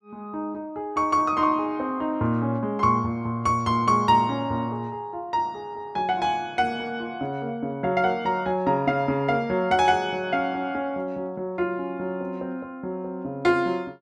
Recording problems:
none

